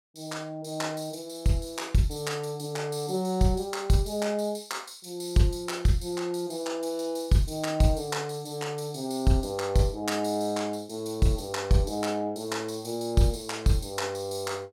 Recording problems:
none

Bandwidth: 16.5 kHz